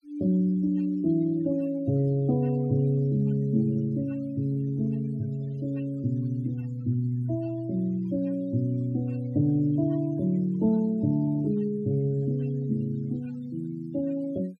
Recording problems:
noise reduction artefacts; signal-to-artefact ratio 27 dB

